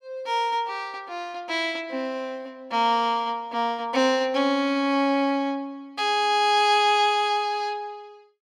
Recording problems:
none

